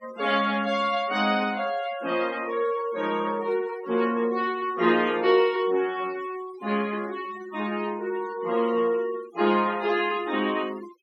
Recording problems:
denoising artefacts; signal-to-artefact ratio 19 dB

